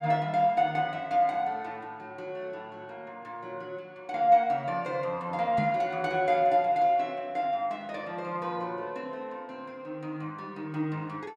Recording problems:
microphone bump; at 5.5 s; peak +1 dB vs average level

